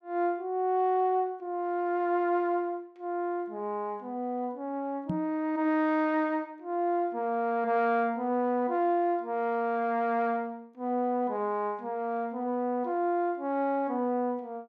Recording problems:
microphone bump; at 5 s; peak +1 dB vs average level

